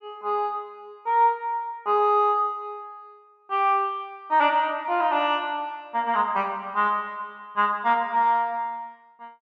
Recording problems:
none

